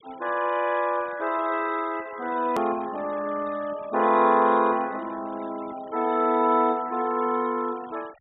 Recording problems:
treble missing; nothing above 4 kHz
denoising artefacts; signal-to-artefact ratio 23 dB
edit click; at 2.5 s

